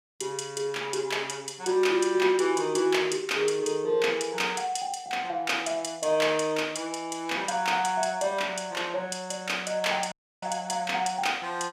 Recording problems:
dropout; at 10 s

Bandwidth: 15.5 kHz